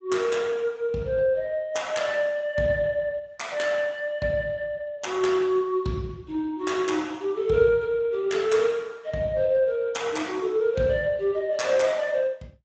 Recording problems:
lossy compression; Speex, log-spectral distance 3 dB, nothing above 7.6 kHz

